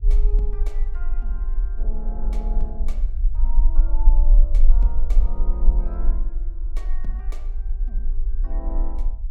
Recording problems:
rumble; below 40 Hz, strongest tone 22 Hz, SNR -17 dB

